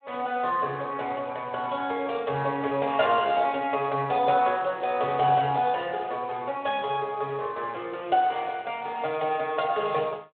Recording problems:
phone line; 300 Hz to 3.7 kHz, Speex

